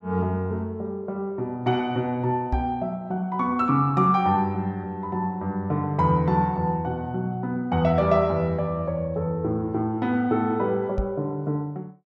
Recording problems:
microphone bump; at 2.5 s and at 11 s; peak +2 dB vs average level

